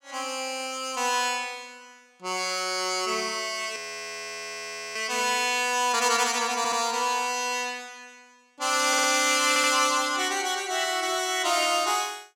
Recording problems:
frozen audio; at 4 s for 1 s
stutter; at 6.5 s, at 9 s and at 9.5 s

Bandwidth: 16 kHz